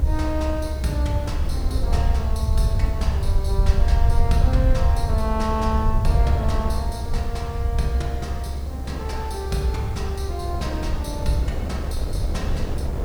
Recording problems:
hiss; SNR 22 dB
rumble; below 74 Hz, SNR -3 dB
wind noise; below 450 Hz, SNR 7 dB

